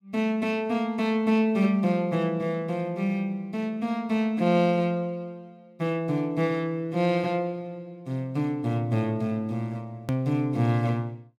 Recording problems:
click at an edit; at 10 s

